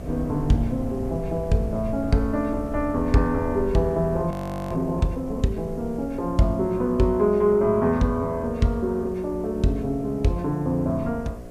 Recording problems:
electrical hum; 60 Hz, harmonics up to 720 Hz, SNR 16 dB
background hiss; SNR 30 dB
low-frequency rumble; below 100 Hz, SNR 15 dB
frozen audio; at 4.5 s

